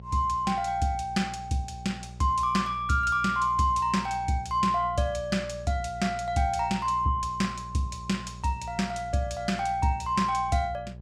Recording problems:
electrical hum; 60 Hz, harmonics up to 600 Hz, SNR 16 dB

